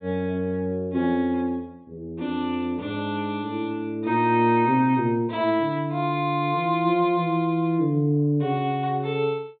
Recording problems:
treble cut off; nothing above 4 kHz

